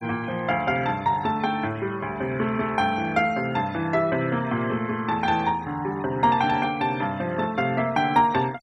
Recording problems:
denoising artefacts; signal-to-artefact ratio 23 dB

